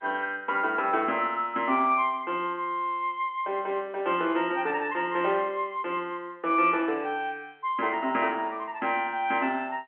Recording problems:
phone line; 280 Hz to 3.2 kHz, G.711

